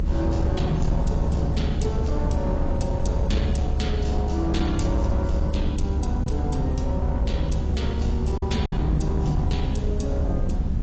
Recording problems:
codec artefacts; AAC, log-spectral distance 2 dB, nothing above 8 kHz
distortion; hard clipping, signal-to-distortion ratio 11 dB
hiss; SNR 22 dB
rumble; below 120 Hz, SNR -2 dB
lost packets; 1.1% of the sound replaced, filled with silence

